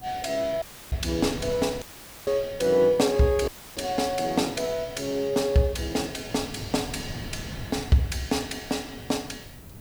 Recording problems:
hiss; SNR 23 dB
wind noise; below 270 Hz, SNR 16 dB
audio cutting out; at 0.5 s, at 2 s and at 3.5 s; filled with static

